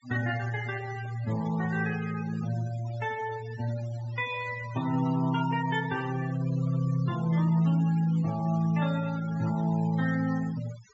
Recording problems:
treble cut off; nothing above 8 kHz
noise reduction artefacts; signal-to-artefact ratio 17 dB

